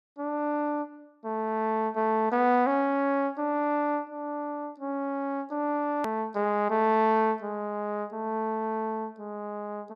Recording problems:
edit click; at 6 s

